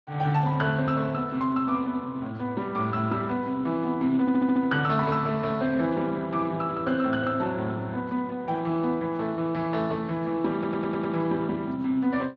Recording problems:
codec artefacts; Speex, log-spectral distance 2 dB
audio stuttering; at 4 s and at 11 s

